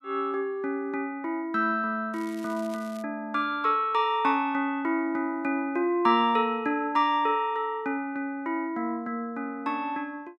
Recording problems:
crackling; at 2 s; loose cable, SNR 23 dB

